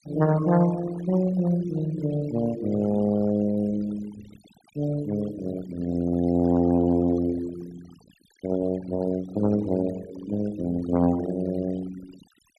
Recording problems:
denoising artefacts; signal-to-artefact ratio 18 dB

